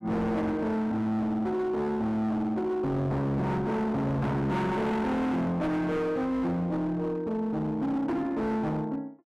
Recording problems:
distorted audio; hard clipping, signal-to-distortion ratio 7 dB

